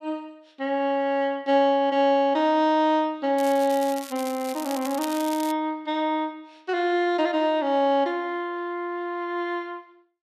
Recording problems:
crackle; from 3.5 to 5.5 s; loose cable, SNR 14 dB

